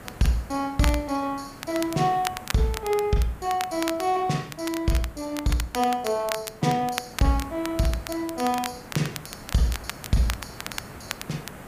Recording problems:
background hiss; SNR 17 dB
crackling; vinyl, SNR 10 dB

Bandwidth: 15 kHz